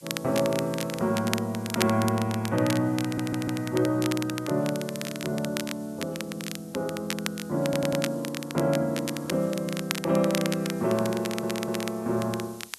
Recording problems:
background hiss; SNR 22 dB
crackle; vinyl, SNR 8 dB
stutter; at 3 s, at 7.5 s and at 11 s

